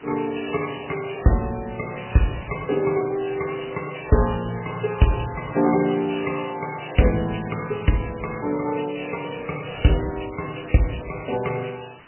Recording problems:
codec artefacts; MP3, log-spectral distance 15 dB, nothing above 3 kHz
hiss; SNR 22 dB

